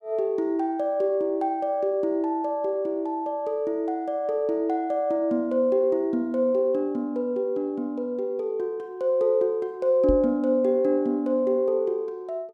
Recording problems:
microphone thump; at 10 s; peak 0 dB vs average level

